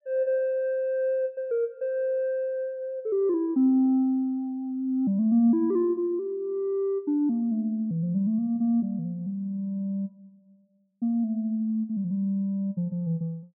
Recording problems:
none

